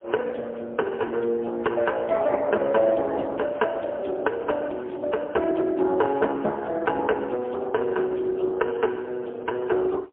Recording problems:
phone line; 260 Hz to 2.4 kHz, AMR-NB, then MP3

